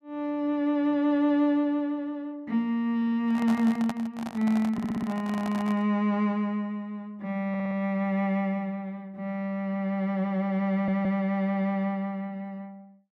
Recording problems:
stutter; 4 times, first at 3 s
microphone handling noise; from 3.5 to 6 s; peak -3 dB vs average level

